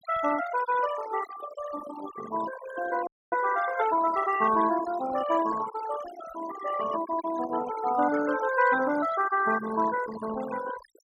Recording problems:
noise reduction artefacts; signal-to-artefact ratio 11 dB
audio freezing; at 3 s

